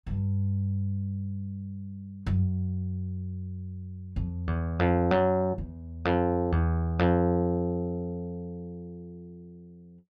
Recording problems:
none

